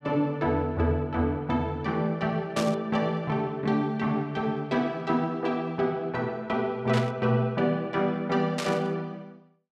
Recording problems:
static burst; at 2.5 s, at 7 s and at 8.5 s; peak -1 dB vs average level

